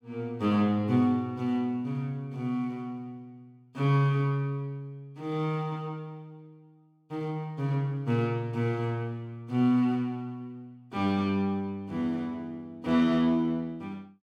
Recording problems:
none

